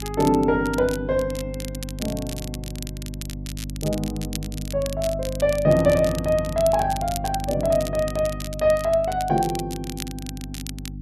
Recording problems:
electrical hum; 50 Hz, harmonics up to 300 Hz, SNR 10 dB
crackling; vinyl, SNR 14 dB

